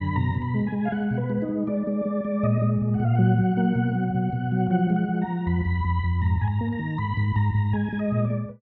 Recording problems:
none

